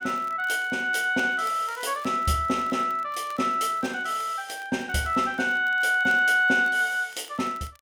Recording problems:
crackling; vinyl, SNR 27 dB

